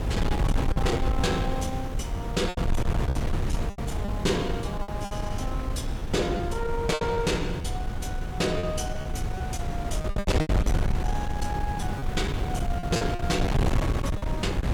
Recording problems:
distorted audio; soft clipping, signal-to-distortion ratio 11 dB
background hiss; slope +2 dB per octave, SNR 28 dB
wind noise; below 160 Hz, SNR -1 dB
lost packets; 8% of the sound replaced, filled with repeated pitch periods

